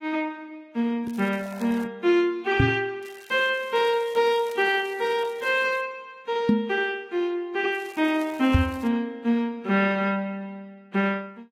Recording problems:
lossy codec; AAC, log-spectral distance 2 dB
crackling; at 1 s, from 3 to 6 s and from 7.5 to 9 s; loose cable, SNR 24 dB
knock on the microphone; at 2.5 s, at 6.5 s and at 8.5 s; peak +8 dB vs average level

